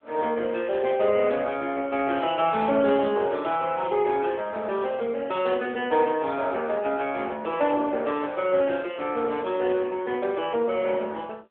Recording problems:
telephone audio; 300 Hz to 3.5 kHz, AMR-NB

